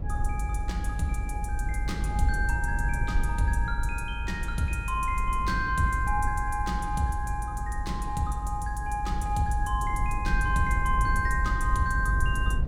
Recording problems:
rumble; below 72 Hz, SNR 1 dB

